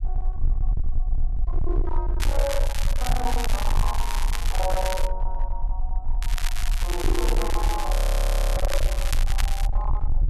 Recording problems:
distortion; hard clipping, uneven, signal-to-distortion ratio 8 dB
low-frequency rumble; below 40 Hz, strongest tone 24 Hz, SNR -4 dB
crackle; from 2 to 5 s and from 6 to 9.5 s; loose cable, SNR 3 dB
microphone thump; at 3 s; peak +4 dB vs average level
frozen audio; at 8 s for 0.5 s

